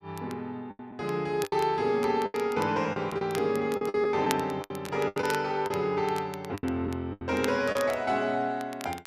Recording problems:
crackle; vinyl, SNR 16 dB
lost packets; 10% of the sound replaced, filled with the last packet

